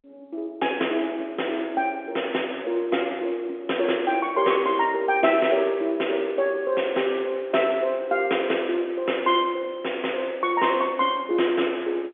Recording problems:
phone line; 220 Hz to 3.5 kHz, G.711

